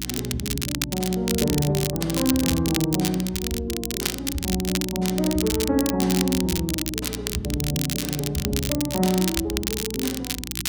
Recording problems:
hum; 60 Hz, harmonics up to 360 Hz, SNR 11 dB
crackle; vinyl, SNR 3 dB

